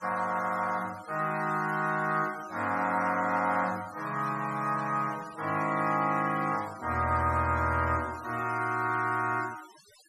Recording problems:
noise reduction artefacts; signal-to-artefact ratio 19 dB

